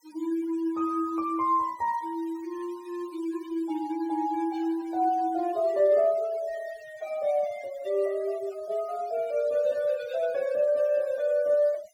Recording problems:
noise reduction artefacts; signal-to-artefact ratio 22 dB

